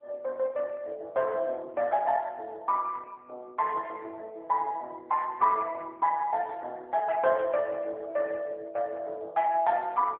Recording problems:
phone line; 340 Hz to 2.6 kHz, AMR-NB

